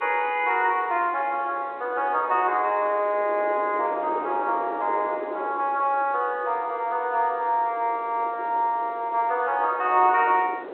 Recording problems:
telephone audio; 300 Hz to 3.3 kHz, G.711
wind on the microphone; below 720 Hz, SNR 15 dB

